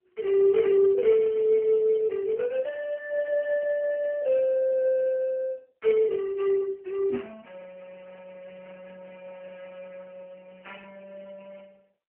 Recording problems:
phone line; 240 Hz to 3.1 kHz, AMR-NB

